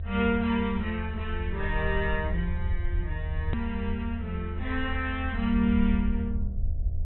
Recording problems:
treble missing; nothing above 3.9 kHz
hum; 60 Hz, harmonics up to 720 Hz, SNR 28 dB
rumble; below 80 Hz, SNR 3 dB
edit click; at 3.5 s

